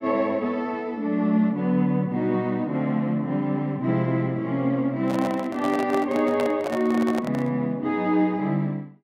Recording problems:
microphone handling noise; from 5 to 7.5 s; peak -3 dB vs average level

